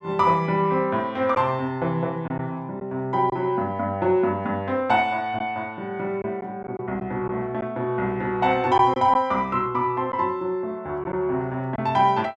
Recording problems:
lost packets; 2% of the sound replaced, filled with silence

